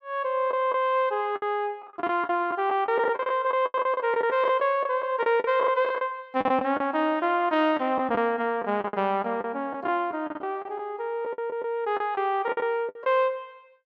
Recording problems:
packet loss; 12% of the sound replaced, filled with the last packet

